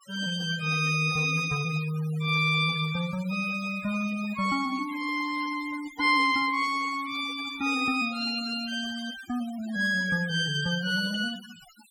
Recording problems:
denoising artefacts; signal-to-artefact ratio 18 dB

